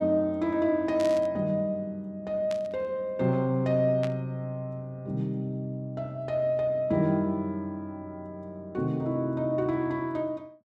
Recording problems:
static burst; at 1 s, at 2.5 s and at 4 s; peak -7 dB vs average level

